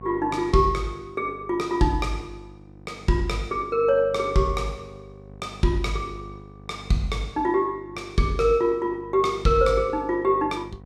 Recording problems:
electrical hum; 50 Hz, harmonics up to 1.1 kHz, SNR 20 dB

